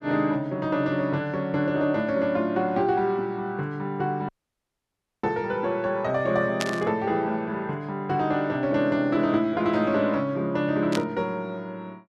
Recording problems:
audio cutting out; at 4.5 s for 1 s
static burst; at 6.5 s and at 11 s; peak +2 dB vs average level

